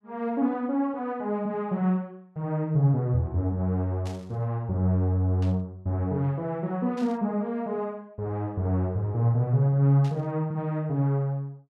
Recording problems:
burst of static; 4 times, first at 4 s; peak -14 dB vs average level

